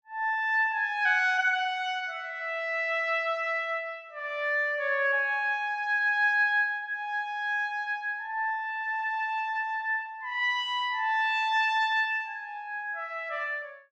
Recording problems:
none

